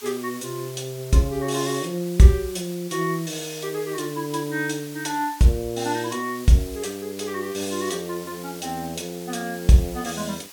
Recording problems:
hiss; slope +2 dB per octave, SNR 16 dB

